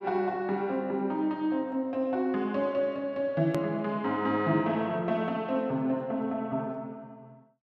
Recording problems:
edit click; at 3.5 s

